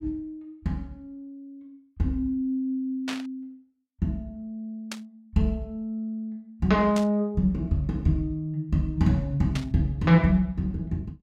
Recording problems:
static burst; 4 times, first at 3 s; peak -3 dB vs average level

